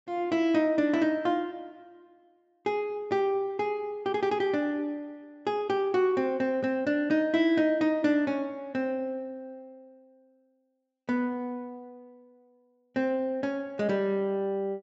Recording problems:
treble missing; nothing above 8 kHz

